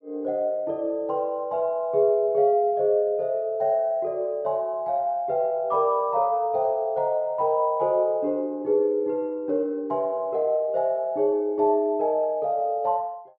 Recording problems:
none

